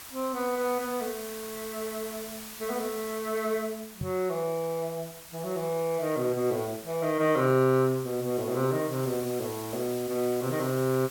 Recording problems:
hiss; slope 0 dB per octave, SNR 13 dB
knock on the microphone; at 4 s; peak -2 dB vs average level

